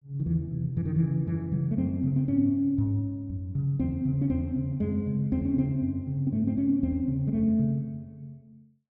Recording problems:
treble cut off; nothing above 8 kHz

